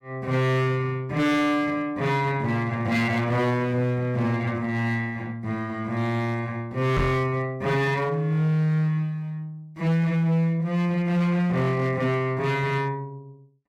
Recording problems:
distorted audio; hard clipping, signal-to-distortion ratio 11 dB
knock on the microphone; at 7 s; peak +4 dB vs average level

